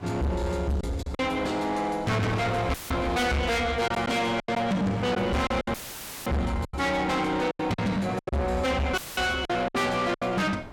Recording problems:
distortion; soft clipping, signal-to-distortion ratio 6 dB
wind noise; below 980 Hz, SNR 15 dB
packet loss; 8% of the sound replaced, filled with silence
audio cutting out; at 2.5 s, at 5.5 s for 0.5 s and at 9 s; filled with static

